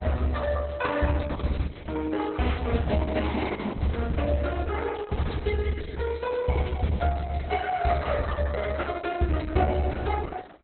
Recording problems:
lossy codec; Opus, log-spectral distance 6 dB, nothing above 4.1 kHz

